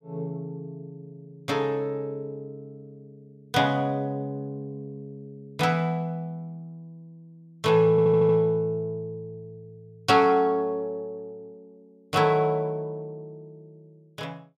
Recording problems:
audio stuttering; at 8 s

